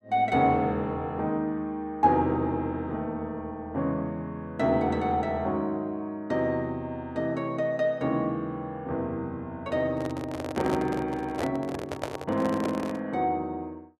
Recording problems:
microphone handling noise; from 10 to 13 s; peak +1 dB vs average level

